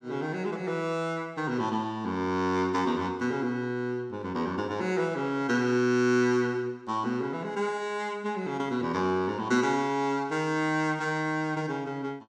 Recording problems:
none

